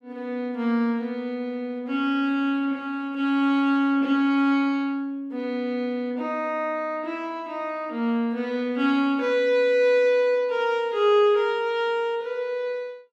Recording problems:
none

